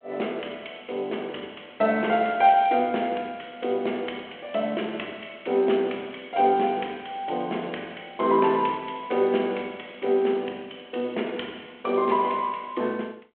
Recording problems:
telephone audio; 240 Hz to 3.3 kHz, G.726

